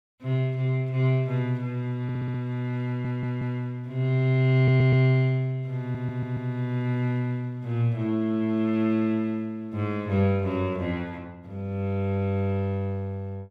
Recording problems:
stutter; 4 times, first at 2 s

